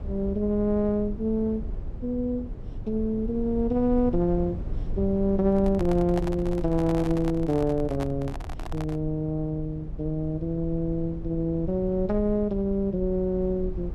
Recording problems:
rumble; below 92 Hz, SNR 10 dB
handling noise; from 5.5 to 9 s; peak -5 dB vs average level

